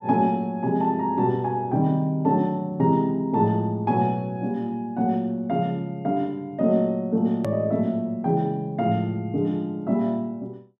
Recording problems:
hard cut with a click; at 7.5 s

